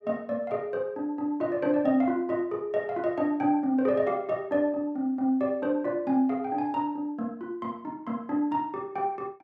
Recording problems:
none

